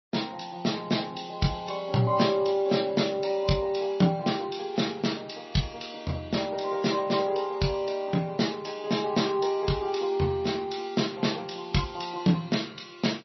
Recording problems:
codec artefacts; MP3, log-spectral distance 5 dB, nothing above 5.8 kHz

